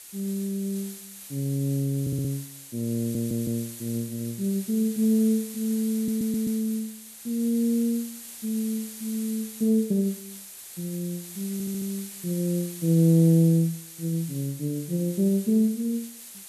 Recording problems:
background hiss; slope +2 dB per octave, SNR 13 dB
audio stuttering; 4 times, first at 2 s

